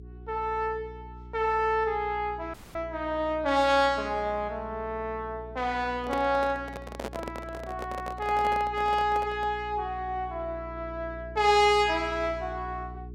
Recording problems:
electrical hum; 60 Hz, harmonics up to 420 Hz, SNR 16 dB
dropout; at 2.5 s
handling noise; from 6 to 9.5 s; peak -3 dB vs average level

